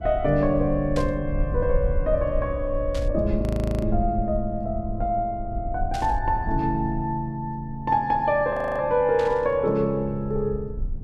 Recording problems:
rumble; below 74 Hz, SNR 7 dB
burst of static; 4 times, first at 1 s; peak -8 dB vs average level
frozen audio; at 3.5 s and at 8.5 s

